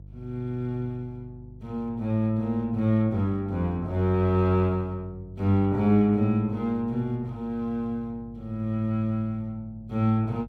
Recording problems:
electrical hum; 50 Hz, harmonics up to 350 Hz, SNR 20 dB

